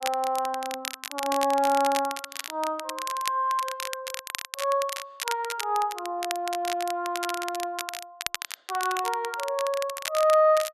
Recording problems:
crackling; vinyl, SNR 8 dB

